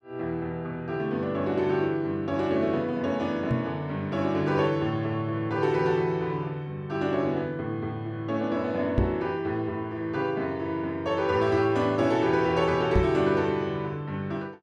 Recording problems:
microphone bump; at 3.5 s, at 9 s and at 13 s; peak +6 dB vs average level

